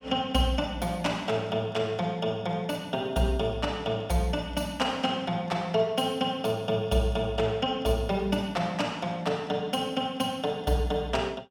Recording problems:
none

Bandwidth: 18 kHz